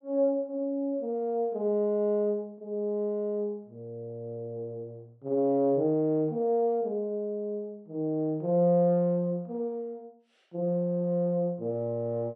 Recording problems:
none

